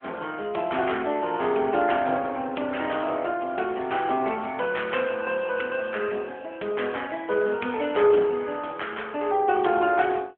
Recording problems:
telephone audio; 280 Hz to 3.3 kHz, AMR-NB

